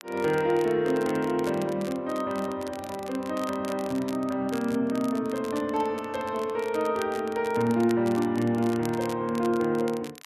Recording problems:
crackling; vinyl, SNR 18 dB

